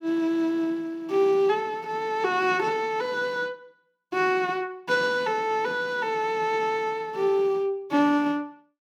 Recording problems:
none

